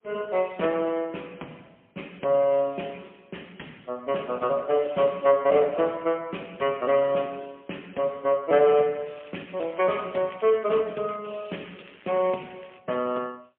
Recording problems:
telephone audio; 220 Hz to 3.3 kHz, AMR-NB, then MP3
crackle; from 9 to 11 s and from 12 to 13 s; loose cable, SNR 27 dB

